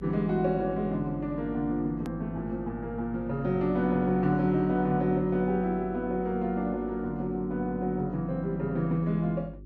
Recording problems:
hum; 50 Hz, harmonics up to 400 Hz, SNR 17 dB
edit click; at 2 s

